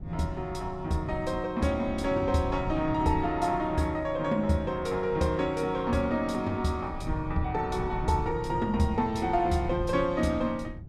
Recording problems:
low-frequency rumble; below 140 Hz, SNR 12 dB

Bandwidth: 15 kHz